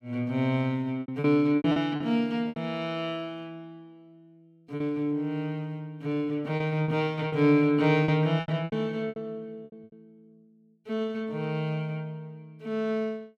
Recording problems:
lost packets; 8% of the sound replaced, filled with repeated pitch periods

